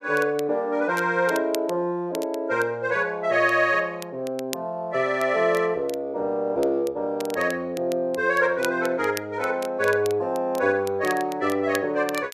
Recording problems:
crackling; vinyl, SNR 18 dB

